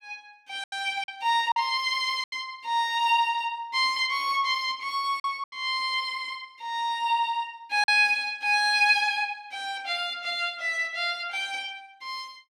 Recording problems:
packet loss; 3% of the sound replaced, filled with silence

